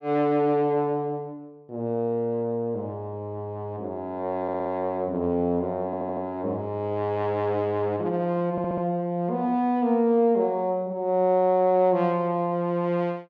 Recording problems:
stutter; at 4.5 s, at 6 s and at 8.5 s

